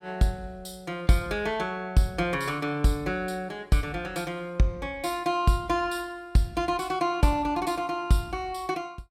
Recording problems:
none

